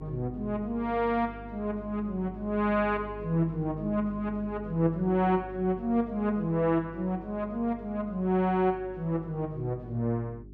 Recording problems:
hum; 50 Hz, harmonics up to 400 Hz, SNR 16 dB

